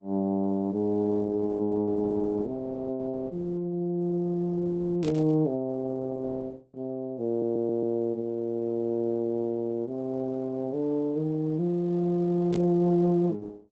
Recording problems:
lossy codec; Opus, log-spectral distance 2 dB
static burst; at 5 s and at 13 s; peak -10 dB vs average level
stutter; at 7.5 s

